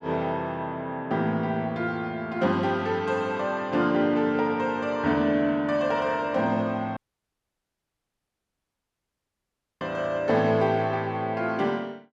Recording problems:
audio cutting out; at 7 s for 3 s

